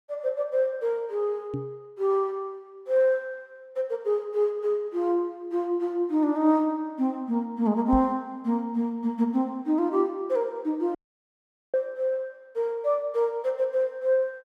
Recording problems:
microphone thump; at 1.5 s and at 8 s; peak -1 dB vs average level
dropout; at 11 s for 1 s

